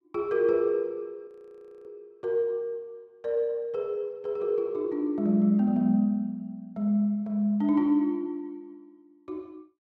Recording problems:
audio freezing; at 1.5 s for 0.5 s

